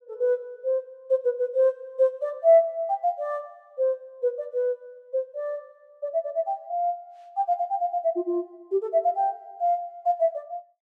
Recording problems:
none

